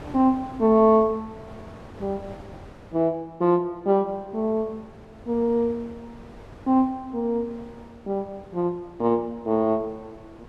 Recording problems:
wind noise; below 700 Hz, SNR 22 dB

